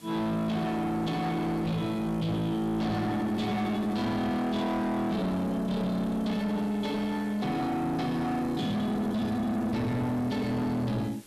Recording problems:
distorted audio; soft clipping, signal-to-distortion ratio 7 dB
background hiss; SNR 24 dB

